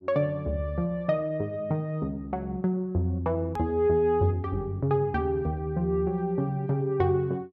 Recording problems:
hard cut with a click; at 3.5 s

